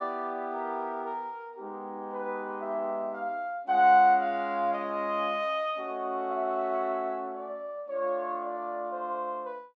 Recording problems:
none

